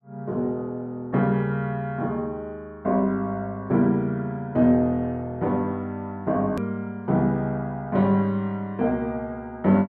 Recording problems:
edit click; at 6.5 s

